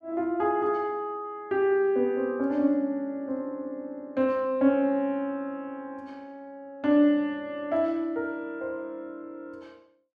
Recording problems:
none

